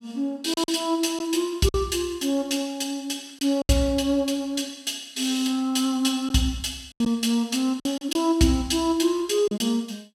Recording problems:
packet loss; 5% of the sound replaced, filled with silence

